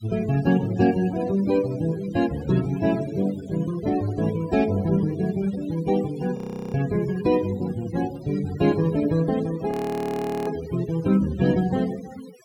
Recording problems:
denoising artefacts; signal-to-artefact ratio 17 dB
audio freezing; at 6.5 s and at 9.5 s for 1 s

